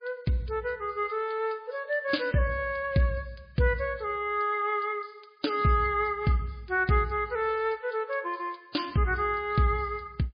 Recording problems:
lossy compression; MP3, log-spectral distance 6 dB

